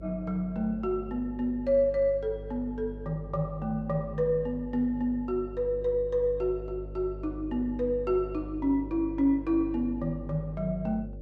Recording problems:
electrical hum; 50 Hz, harmonics up to 600 Hz, SNR 13 dB

